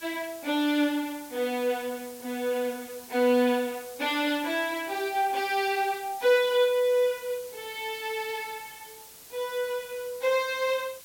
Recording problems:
hiss; slope 0 dB per octave, SNR 17 dB

